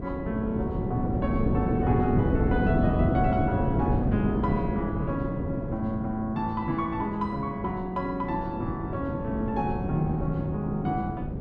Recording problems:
wind noise; below 310 Hz, SNR 0 dB

